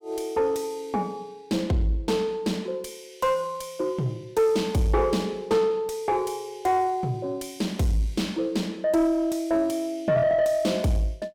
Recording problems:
distorted audio; soft clipping, signal-to-distortion ratio 11 dB

